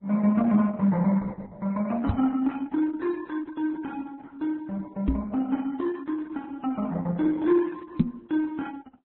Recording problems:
lossy compression; Opus, then Vorbis, log-spectral distance 3 dB, nothing above 3.5 kHz
microphone thump; at 2 s, at 5 s and at 8 s; peak +8 dB vs average level

